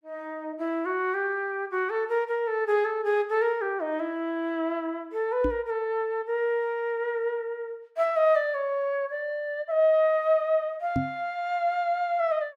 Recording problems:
knock on the microphone; at 5.5 s and at 11 s; peak +3 dB vs average level

